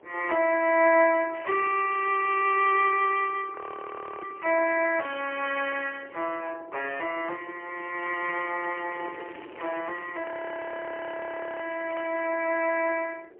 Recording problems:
phone line; 300 Hz to 3.1 kHz, AMR-NB, then MP3
wind noise; below 670 Hz, SNR 20 dB
crackling; at 1.5 s and from 8 to 12 s; loose cable, SNR 20 dB
audio freezing; at 3.5 s for 0.5 s and at 10 s for 1.5 s

